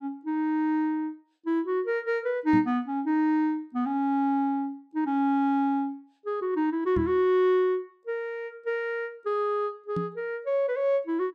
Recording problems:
microphone bump; at 2.5 s, at 7 s and at 10 s; peak 0 dB vs average level

